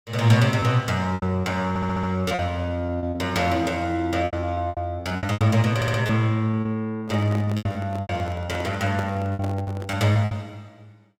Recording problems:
lost packets; 12% of the sound replaced, filled with repeated pitch periods
audio stuttering; at 1.5 s and at 6 s
handling noise; from 7 to 10 s; peak -5 dB vs average level

